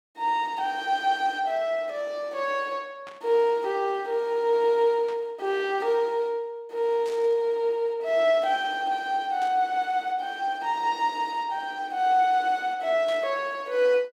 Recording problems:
static burst; 5 times, first at 3 s; peak -14 dB vs average level

